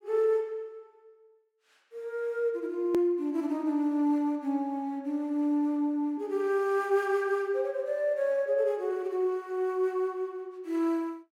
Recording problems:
hard cut with a click; at 3 s

